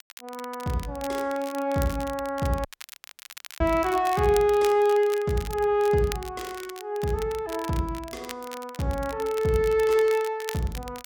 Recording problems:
crackling; vinyl, SNR 17 dB
audio cutting out; at 2.5 s for 1 s

